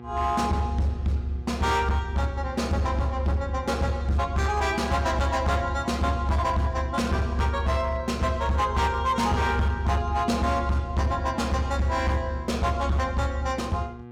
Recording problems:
distortion; hard clipping, signal-to-distortion ratio 11 dB
electrical hum; 60 Hz, harmonics up to 2 kHz, SNR 17 dB

